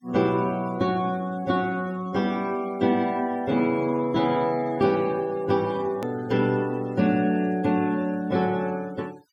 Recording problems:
denoising artefacts; signal-to-artefact ratio 24 dB
click at an edit; at 6 s

